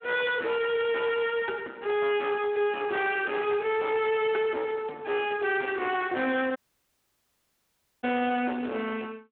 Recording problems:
phone line; 220 Hz to 3.7 kHz, Speex
distortion; soft clipping, signal-to-distortion ratio 7 dB
audio cutting out; at 6.5 s for 1.5 s

